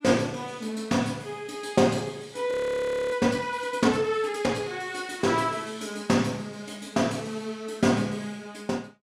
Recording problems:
audio freezing; at 2.5 s for 0.5 s

